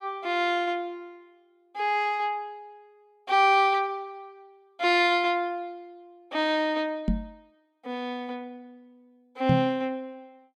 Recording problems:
knock on the microphone; at 7 s and at 9.5 s; peak +5 dB vs average level

